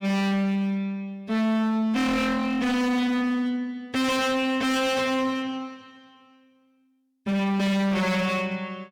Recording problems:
distorted audio; hard clipping, uneven, signal-to-distortion ratio 7 dB

